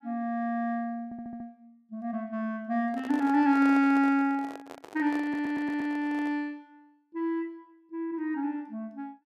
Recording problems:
stutter; at 1 s and at 5 s
handling noise; from 3 to 6.5 s; peak -9 dB vs average level

